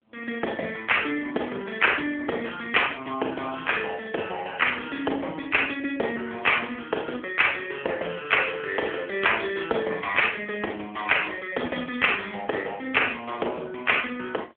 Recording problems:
phone line; 320 Hz to 3.3 kHz, AMR-NB

